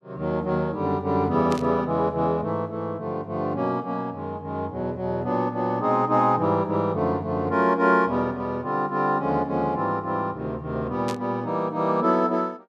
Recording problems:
static burst; at 1.5 s and at 11 s; peak -7 dB vs average level

